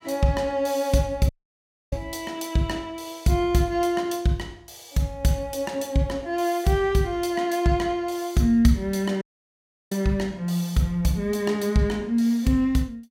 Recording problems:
audio cutting out; at 1.5 s for 0.5 s and at 9 s for 0.5 s

